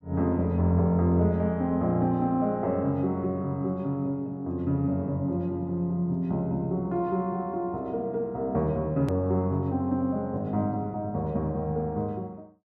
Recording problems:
click at an edit; at 9 s

